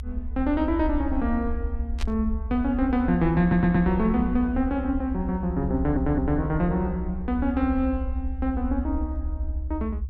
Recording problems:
rumble; below 70 Hz, SNR 7 dB
static burst; at 2 s; peak -7 dB vs average level
stutter; at 3.5 s and at 6 s

